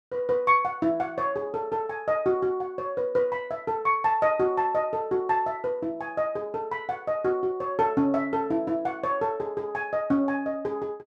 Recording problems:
none

